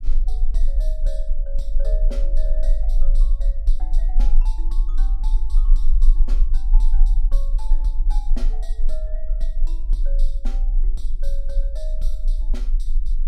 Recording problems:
low-frequency rumble; below 34 Hz, strongest tone 20 Hz, SNR -18 dB

